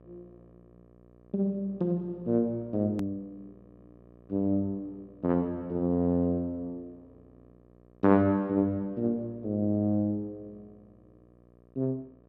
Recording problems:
electrical hum; 60 Hz, harmonics up to 1.3 kHz, SNR 27 dB
edit click; at 3 s

